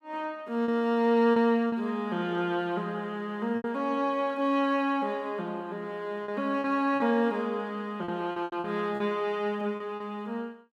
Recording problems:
packet loss; 6% of the sound replaced, filled with repeated pitch periods

